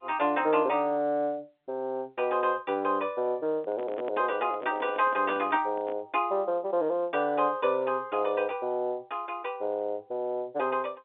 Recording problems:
telephone audio; 220 Hz to 3.5 kHz, G.711
handling noise; from 3.5 to 6 s; peak -8 dB vs average level

